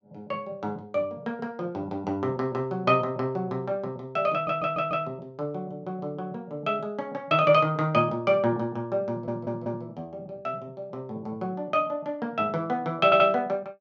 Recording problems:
audio stuttering; at 4.5 s, at 9 s and at 13 s

